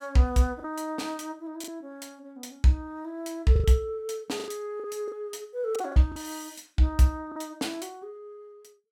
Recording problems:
packet loss; 6% of the sound replaced, filled with the last packet

